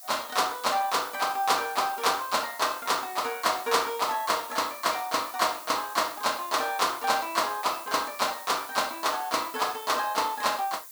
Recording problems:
hiss; SNR 14 dB

